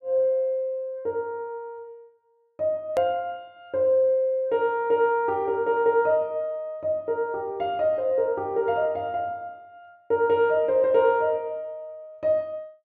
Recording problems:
edit click; at 3 s

